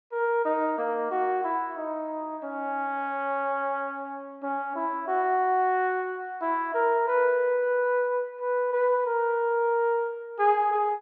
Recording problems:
none

